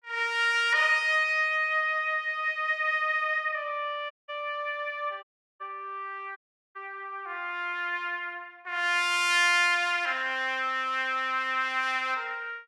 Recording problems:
dropout; at 4 s, at 5 s and at 6.5 s

